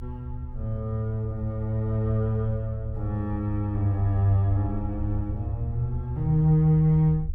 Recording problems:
rumble; below 76 Hz, SNR 10 dB

